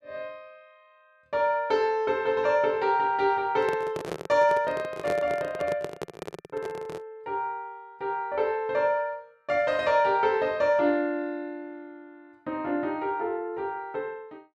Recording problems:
microphone handling noise; from 3.5 to 7 s; peak -2 dB vs average level

